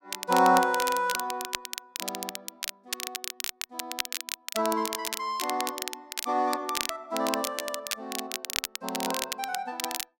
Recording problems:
crackling; vinyl, SNR 5 dB

